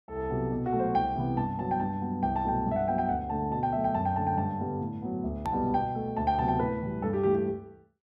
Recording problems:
hard cut with a click; at 5.5 s

